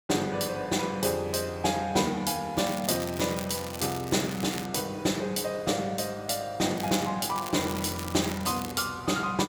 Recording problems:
crackle; from 2.5 to 4.5 s and from 7 to 8.5 s; loose cable, SNR 12 dB

